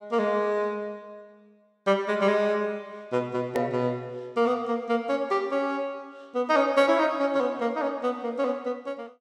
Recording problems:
edit click; at 3.5 s

